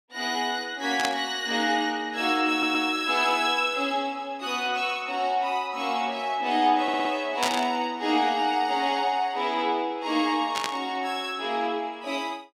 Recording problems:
burst of static; at 1 s, at 7.5 s and at 11 s; peak +3 dB vs average level
stutter; at 2.5 s and at 7 s

